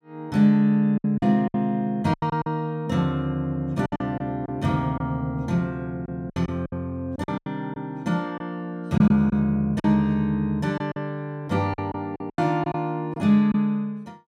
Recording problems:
lost packets; 9% of the sound replaced, filled with silence

